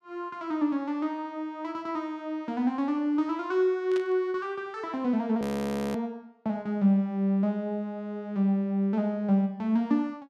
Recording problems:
burst of static; at 4 s; peak -10 dB vs average level
audio freezing; at 5.5 s for 0.5 s

